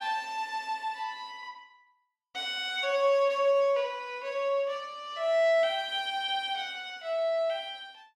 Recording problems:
none

